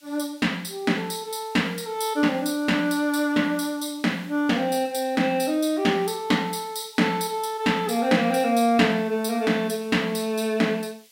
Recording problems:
hiss; slope +4 dB per octave, SNR 27 dB

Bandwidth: 16 kHz